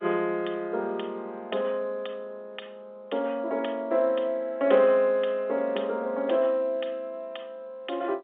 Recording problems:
phone line; 300 Hz to 3.5 kHz, G.711

